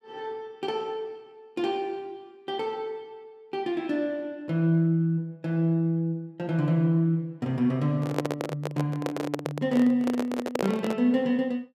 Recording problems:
handling noise; from 8 to 11 s; peak +3 dB vs average level

